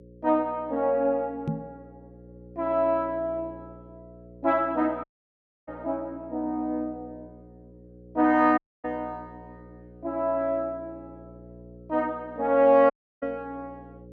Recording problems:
hum; 60 Hz, harmonics up to 540 Hz, SNR 22 dB
microphone thump; at 1.5 s; peak +2 dB vs average level
dropout; at 5 s for 0.5 s, at 8.5 s and at 13 s

